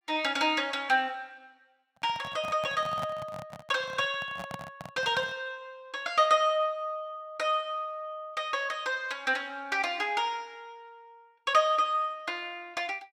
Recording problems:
microphone handling noise; from 2 to 5.5 s; peak -5 dB vs average level

